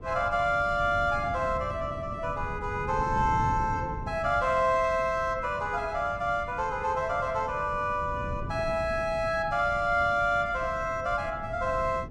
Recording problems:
wind noise; below 190 Hz, SNR 12 dB

